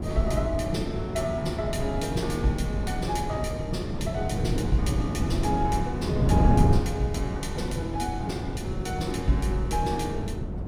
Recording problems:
wind on the microphone; below 210 Hz, SNR 0 dB

